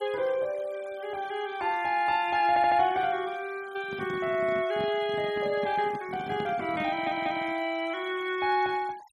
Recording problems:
denoising artefacts; signal-to-artefact ratio 23 dB
audio stuttering; at 2.5 s and at 7 s
handling noise; from 4 to 7.5 s; peak -5 dB vs average level

